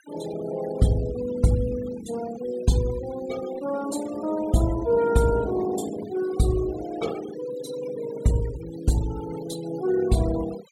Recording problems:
denoising artefacts; signal-to-artefact ratio 16 dB

